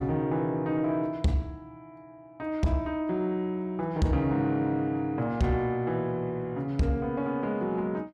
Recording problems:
distortion; soft clipping, signal-to-distortion ratio 11 dB

